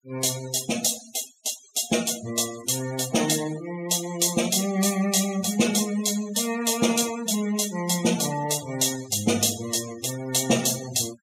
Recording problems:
noise reduction artefacts; signal-to-artefact ratio 14 dB

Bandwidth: 15.5 kHz